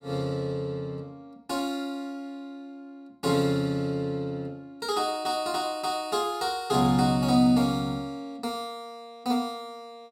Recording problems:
none

